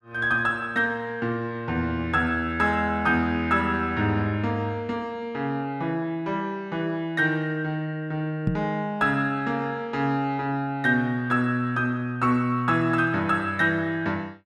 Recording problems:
microphone bump; at 8.5 s; peak +4 dB vs average level

